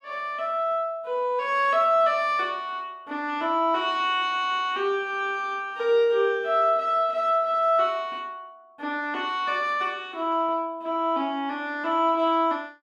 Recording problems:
none

